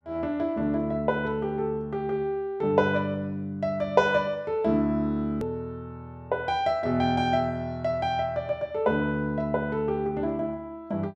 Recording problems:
click at an edit; at 5.5 s

